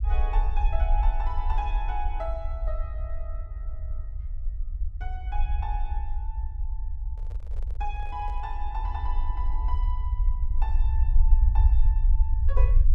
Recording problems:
rumble; below 56 Hz, SNR -9 dB
microphone handling noise; from 7 to 8.5 s; peak -9 dB vs average level

